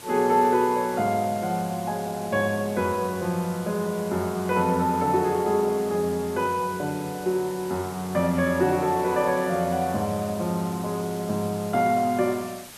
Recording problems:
background hiss; slope -1 dB per octave, SNR 17 dB

